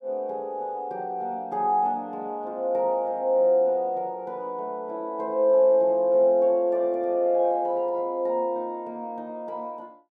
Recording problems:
none

